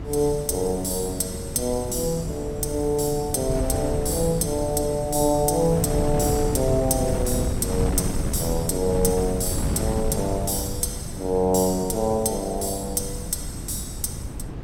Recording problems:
wind on the microphone; below 210 Hz, SNR 6 dB

